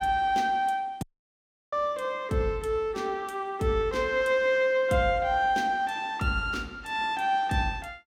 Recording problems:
audio cutting out; at 1 s for 0.5 s

